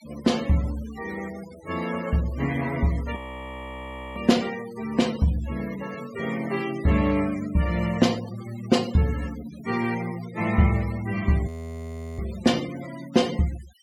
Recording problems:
noise reduction artefacts; signal-to-artefact ratio 17 dB
frozen audio; at 3 s for 1 s and at 11 s for 0.5 s

